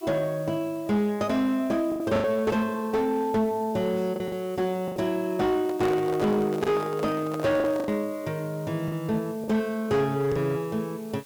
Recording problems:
distorted audio; hard clipping, uneven, signal-to-distortion ratio 12 dB
hiss; slope 0 dB per octave, SNR 24 dB
packet loss; 5% of the sound replaced, filled with the last packet
microphone handling noise; from 5.5 to 8 s; peak -2 dB vs average level

